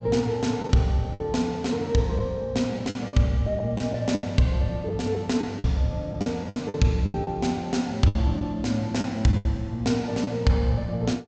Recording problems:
treble cut off; nothing above 8 kHz
lost packets; 9% of the sound replaced, filled with the last packet

